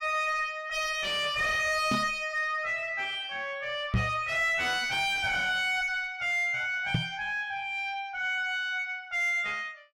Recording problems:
distorted audio; soft clipping, signal-to-distortion ratio 4 dB
microphone thump; at 2 s, at 4 s and at 7 s; peak +5 dB vs average level

